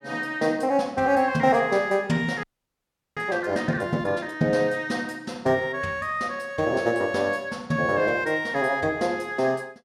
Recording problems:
frozen audio; at 2.5 s for 0.5 s

